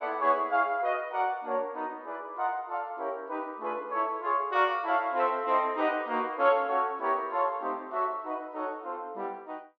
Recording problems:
none

